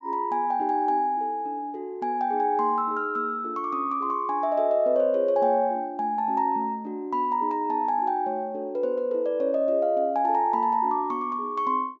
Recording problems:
treble cut off; nothing above 8 kHz

